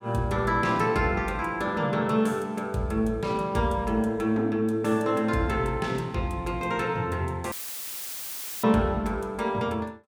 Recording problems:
audio cutting out; at 7.5 s for 1 s; filled with static

